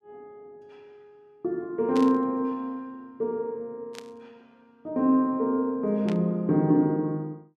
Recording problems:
burst of static; at 2 s, at 4 s and at 6 s; peak -9 dB vs average level

